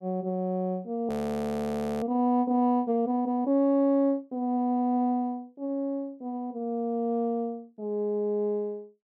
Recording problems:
audio freezing; at 1 s for 1 s

